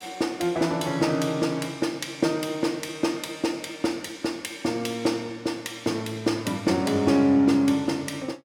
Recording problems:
none

